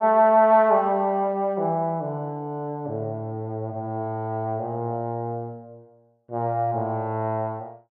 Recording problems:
none

